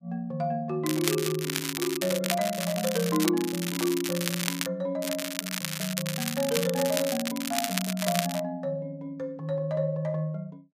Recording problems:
crackle; from 1 to 3.5 s, from 3.5 to 4.5 s and from 5 to 8.5 s; loose cable, SNR 2 dB

